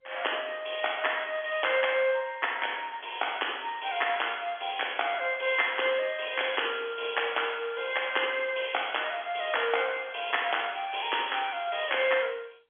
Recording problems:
telephone audio; 240 Hz to 3.4 kHz, G.711

